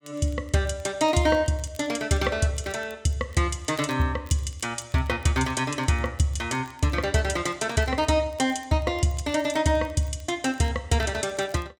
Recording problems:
crackle; vinyl, SNR 29 dB

